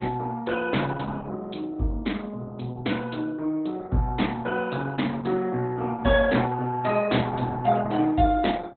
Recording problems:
lossy codec; Opus, log-spectral distance 4 dB, nothing above 3.9 kHz

